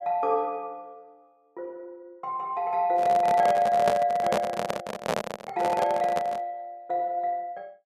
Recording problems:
microphone handling noise; from 3 to 6.5 s; peak +3 dB vs average level

